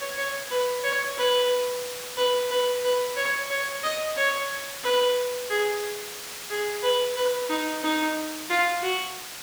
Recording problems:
hiss; slope +1 dB per octave, SNR 9 dB

